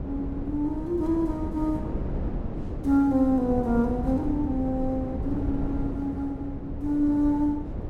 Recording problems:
wind noise; below 270 Hz, SNR 7 dB

